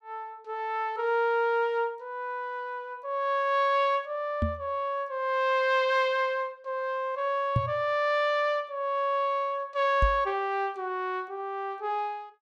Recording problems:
microphone bump; at 4.5 s, at 7.5 s and at 10 s; peak +5 dB vs average level

